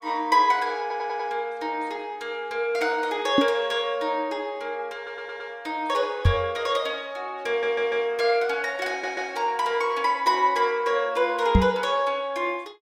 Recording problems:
stutter; 4 times, first at 1 s
microphone thump; at 3.5 s, at 6.5 s and at 12 s; peak +9 dB vs average level

